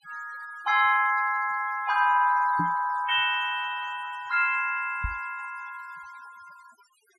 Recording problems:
noise reduction artefacts; signal-to-artefact ratio 23 dB
knock on the microphone; at 2.5 s and at 5 s; peak -3 dB vs average level

